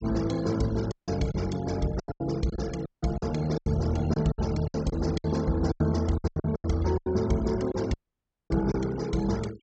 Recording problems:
treble cut off; nothing above 8 kHz
noise reduction artefacts; signal-to-artefact ratio 18 dB
lost packets; 11% of the sound replaced, filled with silence
audio cutting out; at 1 s, at 3 s and at 8 s for 0.5 s

